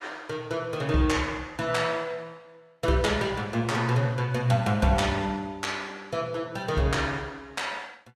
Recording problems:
codec artefacts; Vorbis, log-spectral distance 2 dB, nothing above 13.5 kHz

